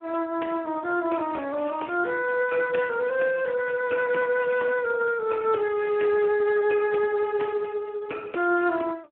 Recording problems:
telephone audio; 260 Hz to 2.5 kHz, Speex

